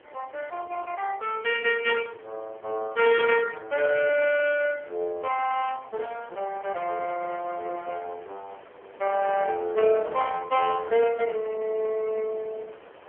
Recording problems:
phone line; 370 Hz to 3.1 kHz, AMR-NB
wind on the microphone; below 1.5 kHz, SNR 24 dB

